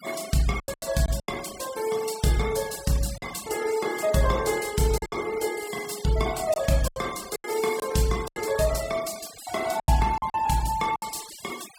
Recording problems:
denoising artefacts; signal-to-artefact ratio 14 dB
lost packets; 8% of the sound replaced, filled with silence

